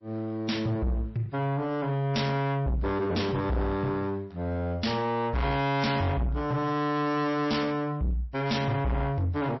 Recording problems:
codec artefacts; MP3, log-spectral distance 2 dB, nothing above 5.7 kHz
distorted audio; soft clipping, signal-to-distortion ratio 7 dB

